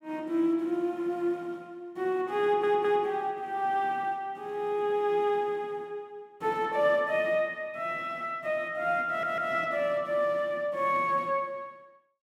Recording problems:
stutter; at 2.5 s and at 9 s

